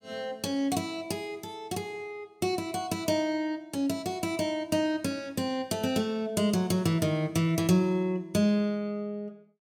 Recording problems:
none

